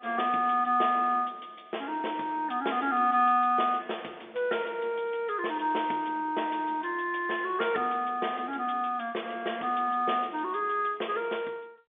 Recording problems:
telephone audio; 260 Hz to 3.6 kHz, G.711

